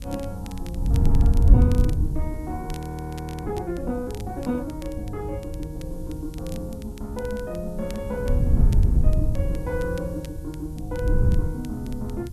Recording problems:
hiss; slope +2 dB per octave, SNR 23 dB
wind on the microphone; below 94 Hz, SNR -7 dB
crackle; vinyl, SNR 17 dB
audio freezing; at 2.5 s for 0.5 s

